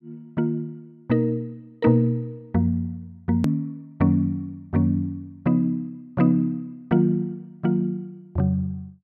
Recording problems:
edit click; at 3.5 s

